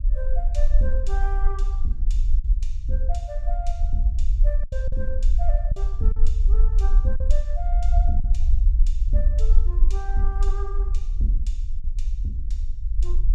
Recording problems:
rumble; below 46 Hz, strongest tone 20 Hz, SNR -10 dB
lost packets; 3% of the sound replaced, filled with silence

